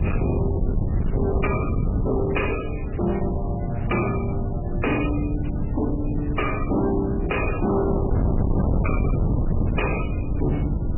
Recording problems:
codec artefacts; MP3, log-spectral distance 7 dB, nothing above 2.5 kHz
distortion; hard clipping, uneven, signal-to-distortion ratio 6 dB
hiss; SNR 21 dB
low-frequency rumble; below 190 Hz, SNR -1 dB

